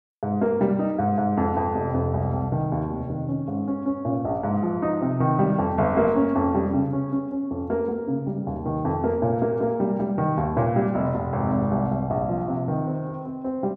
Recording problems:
none

